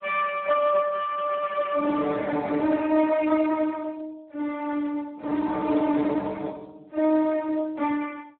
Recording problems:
telephone audio; 240 Hz to 2.9 kHz, Speex

